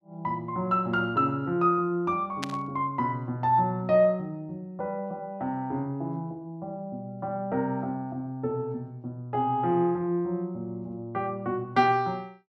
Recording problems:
static burst; at 2.5 s; peak -1 dB vs average level

